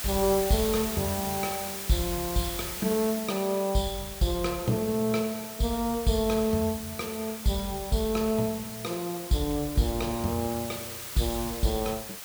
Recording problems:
hiss; slope 0 dB per octave, SNR 7 dB

